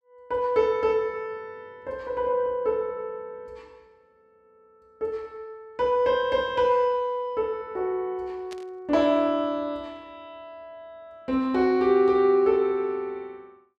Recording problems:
static burst; at 8.5 s; peak -14 dB vs average level

